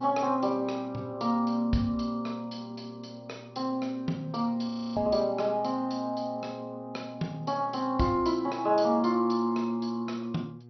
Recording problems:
lossy compression; MP2, log-spectral distance 3 dB, nothing above 5.8 kHz
hum; 60 Hz, harmonics up to 840 Hz, SNR 21 dB
frozen audio; at 4.5 s

